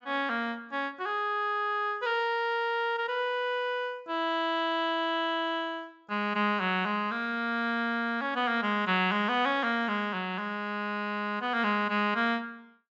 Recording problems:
low-pass filter; nothing above 8 kHz

